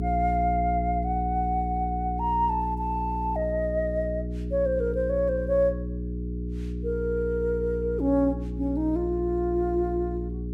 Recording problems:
electrical hum; 60 Hz, harmonics up to 420 Hz, SNR 5 dB

